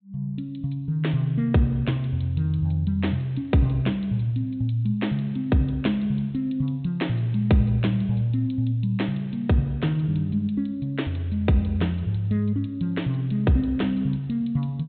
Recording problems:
low-pass filter; nothing above 4 kHz

